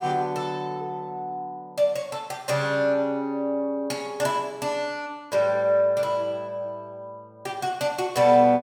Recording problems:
none

